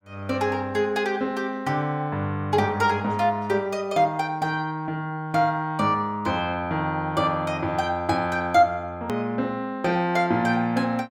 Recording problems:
edit click; at 9 s

